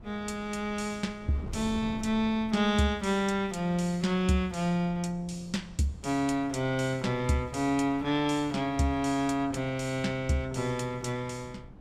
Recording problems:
wind noise; below 220 Hz, SNR 18 dB

